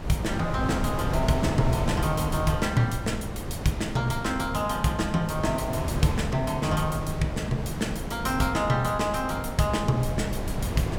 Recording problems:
wind noise; below 400 Hz, SNR 4 dB

